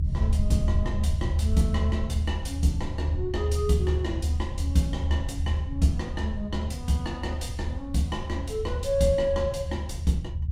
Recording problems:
rumble; below 78 Hz, strongest tone 74 Hz, SNR 0 dB

